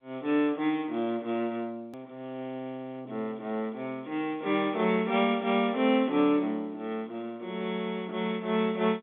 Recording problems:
telephone audio; 220 Hz to 3.6 kHz, G.711
edit click; at 2 s

